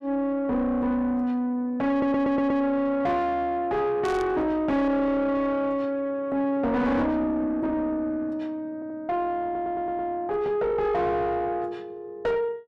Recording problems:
distortion; soft clipping, signal-to-distortion ratio 7 dB
stutter; at 2 s, at 8.5 s and at 9.5 s
burst of static; at 4 s; peak -10 dB vs average level

